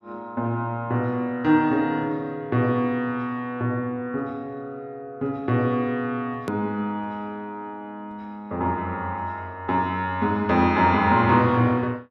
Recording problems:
edit click; at 6.5 s

